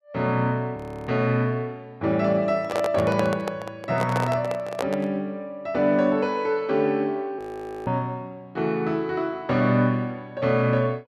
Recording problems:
audio freezing; at 1 s and at 7.5 s
microphone handling noise; from 2.5 to 5 s; peak +2 dB vs average level

